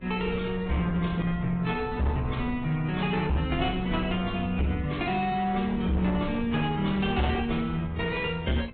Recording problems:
low-pass filter; nothing above 3.8 kHz
lossy compression; AAC, then AAC, log-spectral distance 3 dB
distortion; hard clipping, signal-to-distortion ratio 11 dB
hum; 60 Hz, harmonics up to 840 Hz, SNR 22 dB
wind on the microphone; below 190 Hz, SNR 12 dB

